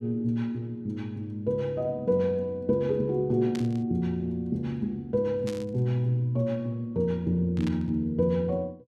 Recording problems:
static burst; at 3.5 s, at 5.5 s and at 7.5 s; peak -9 dB vs average level

